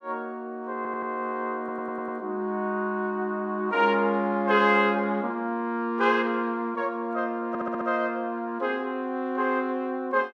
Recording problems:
audio stuttering; at 1 s, at 1.5 s and at 7.5 s

